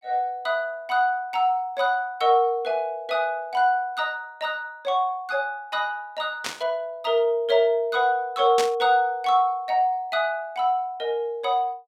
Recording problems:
burst of static; at 6.5 s and at 8.5 s; peak 0 dB vs average level

